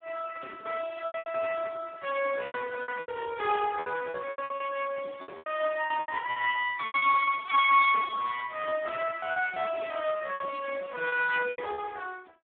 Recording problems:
phone line; 300 Hz to 2.9 kHz, Speex
lost packets; 12% of the sound replaced, filled with repeated pitch periods

